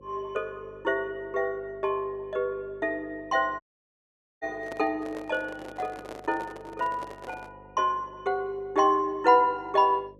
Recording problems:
mains hum; 50 Hz, harmonics up to 550 Hz, SNR 25 dB
audio cutting out; at 3.5 s for 1 s
handling noise; from 4.5 to 7.5 s; peak -8 dB vs average level

